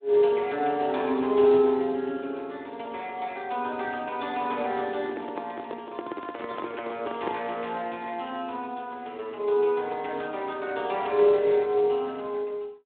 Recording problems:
telephone audio; 220 Hz to 3.7 kHz, Speex
microphone handling noise; from 5 to 7.5 s; peak -2 dB vs average level

